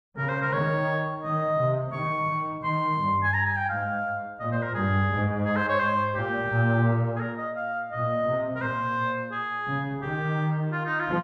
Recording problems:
none

